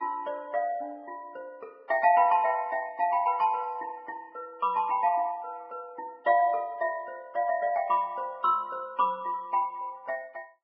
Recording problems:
lossy codec; Vorbis, log-spectral distance 2 dB

